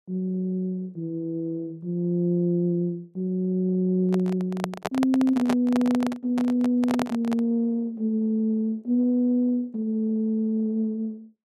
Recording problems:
handling noise; from 4 to 7.5 s; peak +1 dB vs average level

